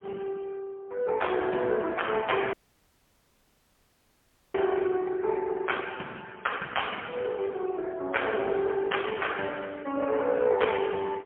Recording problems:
telephone audio; 240 Hz to 3.3 kHz, AMR-NB, then MP3
audio cutting out; at 2.5 s for 2 s

